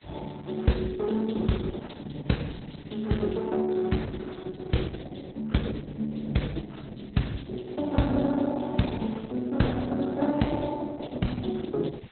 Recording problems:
lossy codec; Opus, log-spectral distance 7 dB, nothing above 4.1 kHz
background hiss; SNR 28 dB

